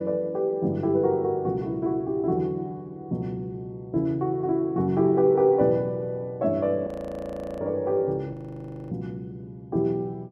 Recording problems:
audio freezing; at 7 s for 0.5 s and at 8.5 s for 0.5 s

